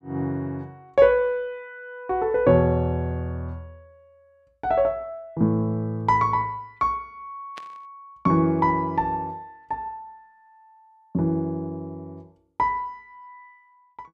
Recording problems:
burst of static; at 7.5 s; peak -12 dB vs average level

